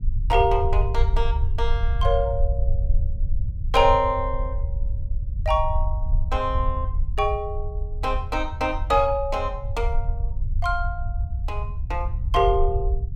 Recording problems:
rumble; below 68 Hz, SNR 2 dB

